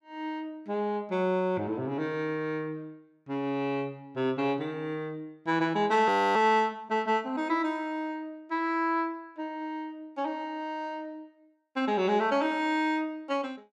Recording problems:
audio freezing; at 6 s

